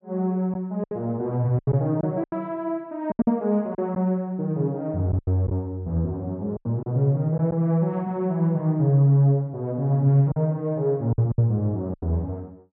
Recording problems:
packet loss; 7% of the sound replaced, filled with silence

